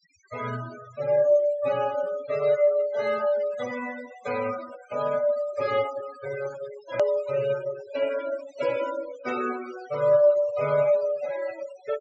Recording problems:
low-pass filter; nothing above 8 kHz
noise reduction artefacts; signal-to-artefact ratio 16 dB
hard cut with a click; at 7 s

